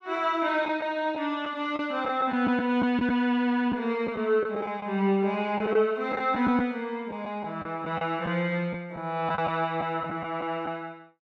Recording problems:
packet loss; 6% of the sound replaced, filled with the last packet

